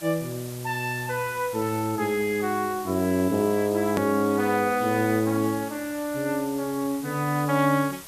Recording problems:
background hiss; slope 0 dB per octave, SNR 15 dB
hard cut with a click; at 4 s

